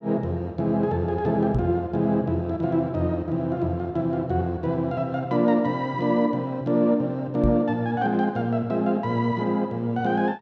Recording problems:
microphone bump; at 1.5 s and at 7.5 s; peak +4 dB vs average level

